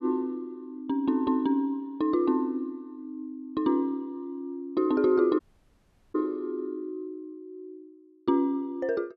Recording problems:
audio cutting out; at 5.5 s for 1 s

